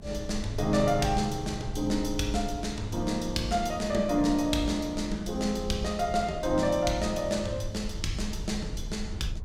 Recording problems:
rumble; below 86 Hz, SNR 11 dB

